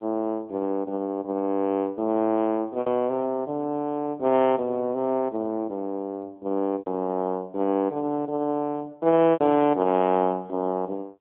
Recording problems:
phone line; 150 Hz to 3.3 kHz, AMR-NB
packet loss; 2% of the sound replaced, filled with repeated pitch periods

